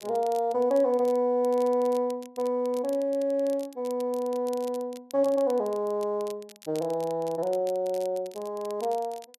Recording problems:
crackling; vinyl, SNR 23 dB

